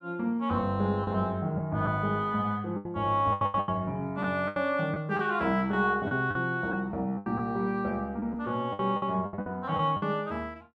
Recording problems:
lost packets; 10% of the sound replaced, filled with the last packet

